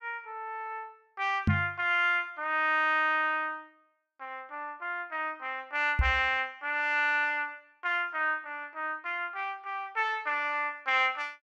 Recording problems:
microphone thump; at 1.5 s and at 6 s; peak +7 dB vs average level

